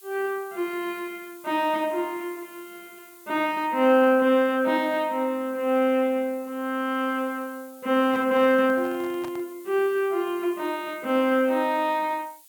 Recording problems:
hiss; slope +4 dB per octave, SNR 24 dB
handling noise; from 8 to 9.5 s; peak -10 dB vs average level

